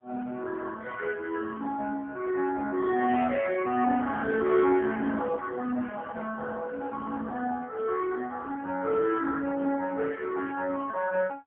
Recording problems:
phone line; 220 Hz to 2.6 kHz, AMR-NB, then MP3

